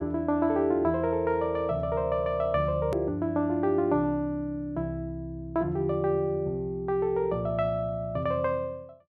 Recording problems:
edit click; at 3 s

